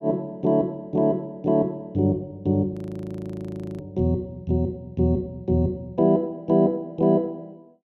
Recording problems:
audio freezing; at 2.5 s for 1 s

